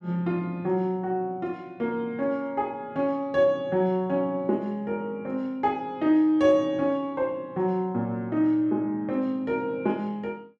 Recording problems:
none

